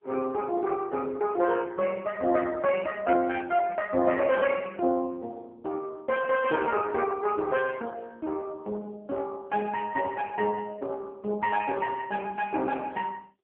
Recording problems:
telephone audio; 280 Hz to 2.8 kHz, AMR-NB

